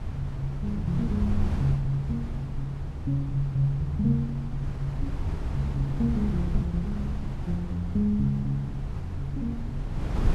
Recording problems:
wind on the microphone; below 120 Hz, SNR 5 dB

